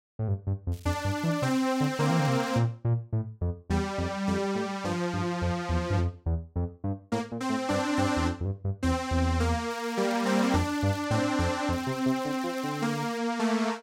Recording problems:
crackle; from 0.5 to 2.5 s, from 9.5 to 11 s and from 12 to 13 s; loose cable, SNR 23 dB

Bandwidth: 16 kHz